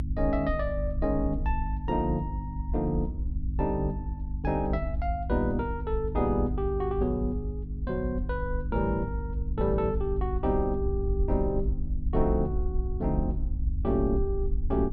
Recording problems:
hum; 50 Hz, harmonics up to 300 Hz, SNR 6 dB
low-frequency rumble; below 62 Hz, SNR 4 dB

